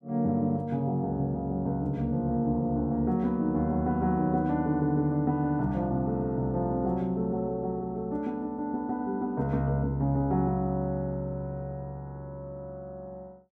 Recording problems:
none

